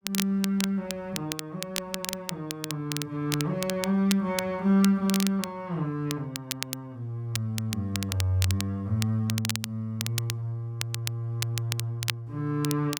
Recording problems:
crackle; vinyl, SNR 6 dB

